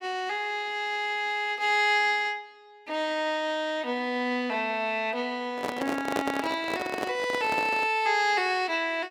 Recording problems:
handling noise; from 5.5 to 8 s; peak +2 dB vs average level

